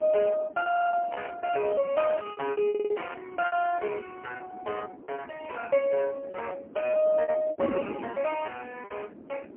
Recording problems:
phone line; 240 Hz to 2.9 kHz, AMR-NB, then MP3
wind noise; below 430 Hz, SNR 14 dB
packet loss; 18% of the sound replaced, filled with repeated pitch periods
audio stuttering; at 0.5 s and at 2.5 s

